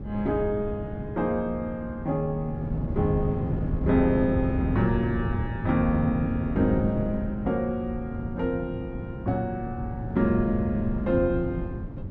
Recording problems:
wind noise; below 210 Hz, SNR 5 dB

